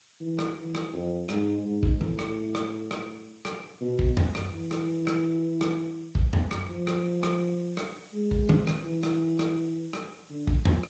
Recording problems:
lossy codec; Speex, log-spectral distance 7 dB, nothing above 17.1 kHz
hiss; slope +2 dB per octave, SNR 27 dB

